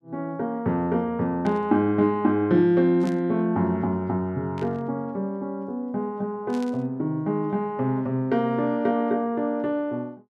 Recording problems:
burst of static; 4 times, first at 1.5 s; peak -13 dB vs average level

